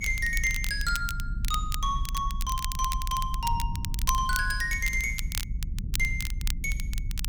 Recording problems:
low-frequency rumble; below 58 Hz, strongest tone 30 Hz, SNR 4 dB
crackling; vinyl, SNR 8 dB

